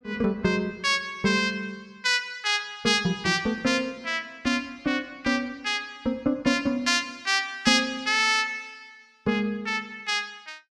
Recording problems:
none

